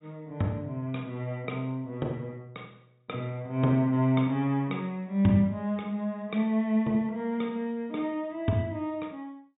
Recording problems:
low-pass filter; nothing above 4 kHz

